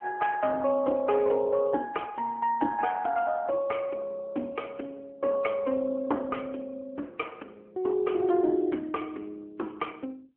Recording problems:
phone line; 240 Hz to 3.2 kHz, AMR-NB

